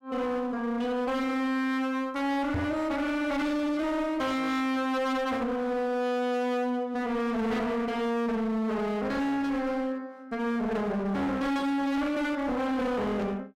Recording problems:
distortion; hard clipping, uneven, signal-to-distortion ratio 5 dB
microphone bump; at 2.5 s; peak +1 dB vs average level

